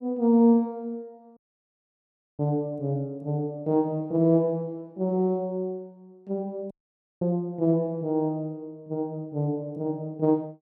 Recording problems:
dropout; at 1.5 s for 1 s and at 6.5 s for 0.5 s

